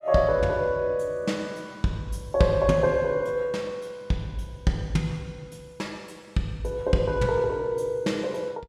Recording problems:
none

